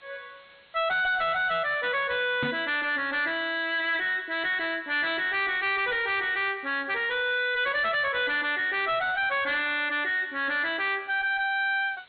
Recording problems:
treble cut off; nothing above 4.2 kHz
distortion; hard clipping, signal-to-distortion ratio 9 dB
background hiss; SNR 30 dB
knock on the microphone; at 2.5 s; peak -2 dB vs average level

